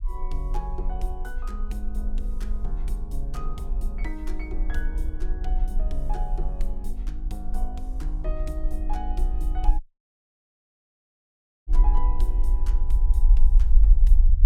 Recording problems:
low-frequency rumble; below 42 Hz, strongest tone 22 Hz, SNR -12 dB
dropout; at 10 s for 2 s

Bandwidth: 17 kHz